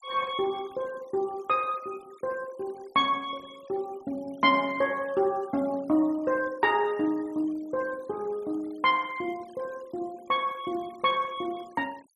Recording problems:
noise reduction artefacts; signal-to-artefact ratio 25 dB

